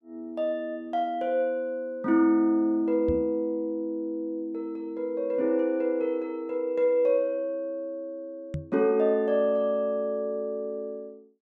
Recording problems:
knock on the microphone; at 3 s and at 8.5 s; peak -1 dB vs average level

